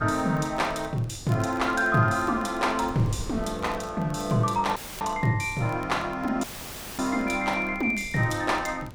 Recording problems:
wind on the microphone; below 240 Hz, SNR 18 dB
crackle; vinyl, SNR 28 dB
dropout; at 5 s and at 6.5 s for 0.5 s; filled with static

